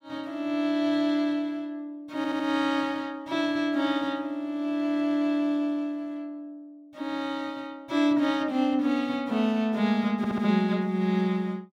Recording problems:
audio stuttering; at 2 s and at 10 s

